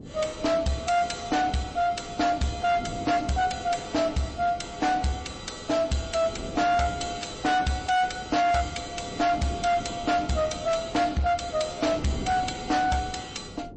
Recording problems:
lossy compression; MP3, log-spectral distance 5 dB, nothing above 8.2 kHz
distorted audio; hard clipping, uneven, signal-to-distortion ratio 10 dB
wind noise; below 370 Hz, SNR 15 dB

